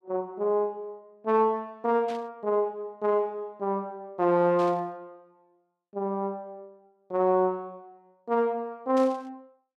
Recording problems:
burst of static; at 2 s, at 4.5 s and at 9 s; peak -12 dB vs average level

